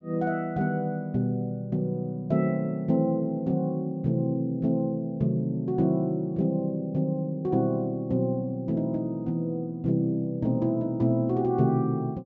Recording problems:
treble cut off; nothing above 8 kHz

